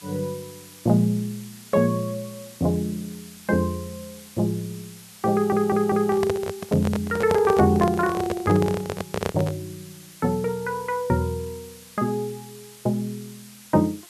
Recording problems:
hiss; slope +1 dB per octave, SNR 20 dB
audio stuttering; at 5.5 s
handling noise; from 5.5 to 9.5 s; peak +3 dB vs average level

